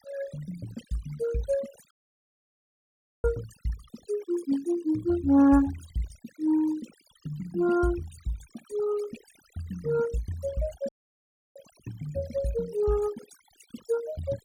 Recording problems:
noise reduction artefacts; signal-to-artefact ratio 17 dB
audio cutting out; at 2 s for 1.5 s and at 11 s for 0.5 s

